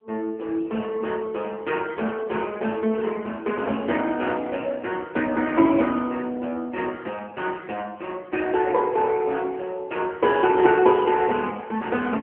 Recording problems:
telephone audio; 240 Hz to 3.1 kHz, AMR-NB

